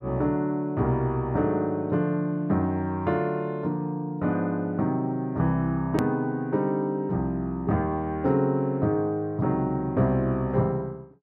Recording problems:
click at an edit; at 6 s

